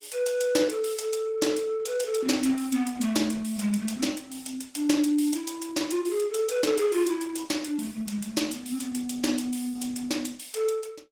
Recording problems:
lossy compression; Opus, log-spectral distance 5 dB, nothing above 19 kHz

